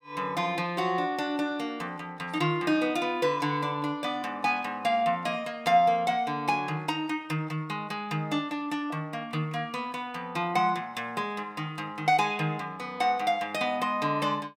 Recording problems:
none

